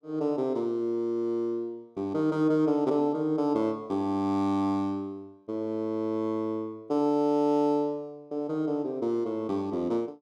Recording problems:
none

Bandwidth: 12.5 kHz